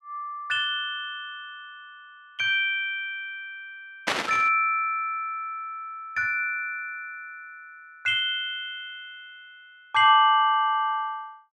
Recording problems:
burst of static; at 4 s; peak +4 dB vs average level

